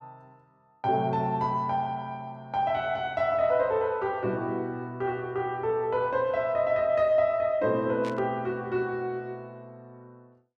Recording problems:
burst of static; at 8 s; peak -10 dB vs average level

